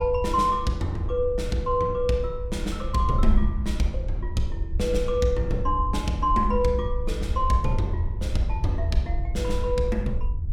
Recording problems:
wind noise; below 66 Hz, SNR 4 dB

